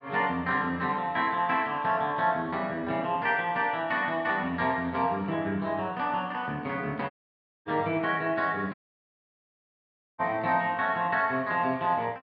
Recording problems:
dropout; at 7 s for 0.5 s and at 8.5 s for 1.5 s

